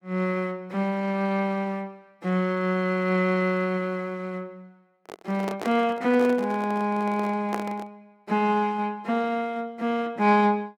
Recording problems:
handling noise; from 5 to 8 s; peak -1 dB vs average level

